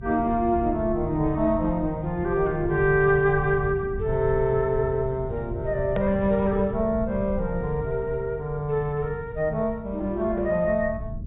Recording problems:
treble cut off; nothing above 4 kHz
low-frequency rumble; below 140 Hz, SNR 11 dB
hard cut with a click; at 6 s

